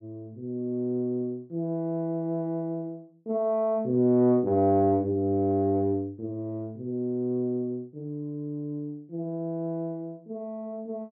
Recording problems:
none

